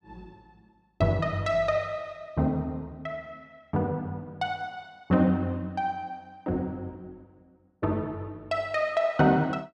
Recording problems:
none

